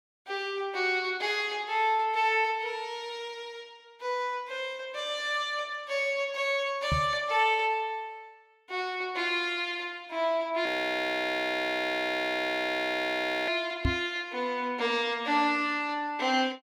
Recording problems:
knock on the microphone; at 7 s and at 14 s; peak +4 dB vs average level
audio freezing; at 11 s for 3 s

